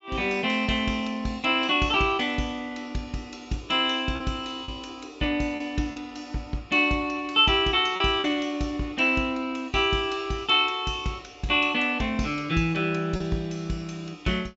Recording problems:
treble missing; nothing above 8 kHz
lost packets; 1.9% of the sound replaced, filled with repeated pitch periods

